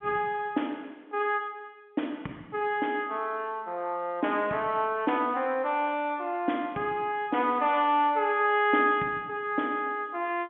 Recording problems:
telephone audio; 240 Hz to 3.3 kHz, G.711

